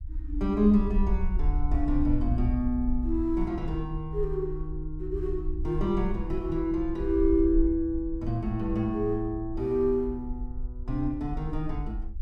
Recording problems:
low-frequency rumble; below 60 Hz, SNR 6 dB

